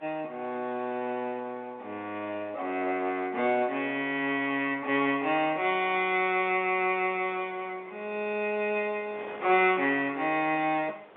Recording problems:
telephone audio; 300 Hz to 3.7 kHz, G.711
wind noise; below 1.4 kHz, SNR 23 dB

